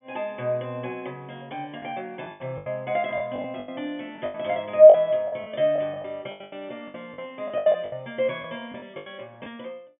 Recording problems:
treble missing; nothing above 3.5 kHz
lost packets; 12% of the sound replaced, filled with the last packet

